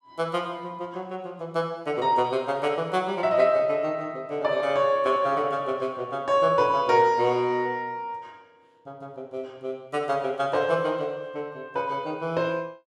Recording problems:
none

